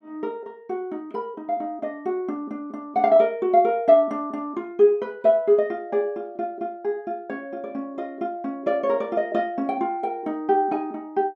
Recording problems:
none

